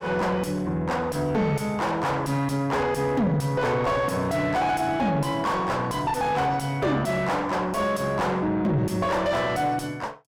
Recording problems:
distorted audio; soft clipping, signal-to-distortion ratio 5 dB

